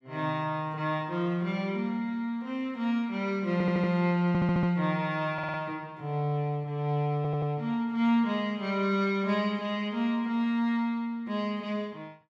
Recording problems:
stutter; 4 times, first at 3.5 s

